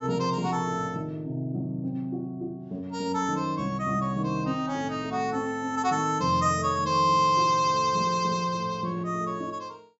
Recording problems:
low-pass filter; nothing above 8 kHz

